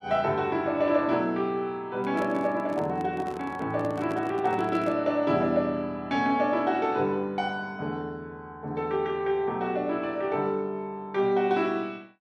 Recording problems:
handling noise; from 2 to 5 s; peak -5 dB vs average level

